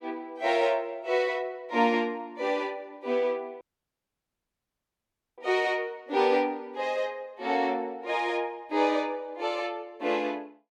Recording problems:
dropout; at 3.5 s for 2 s

